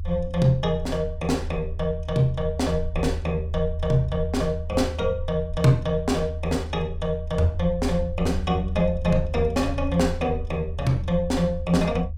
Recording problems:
rumble; below 80 Hz, strongest tone 78 Hz, SNR 7 dB

